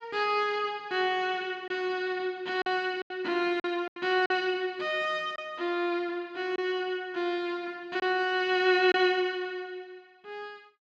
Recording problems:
packet loss; 4% of the sound replaced, filled with silence

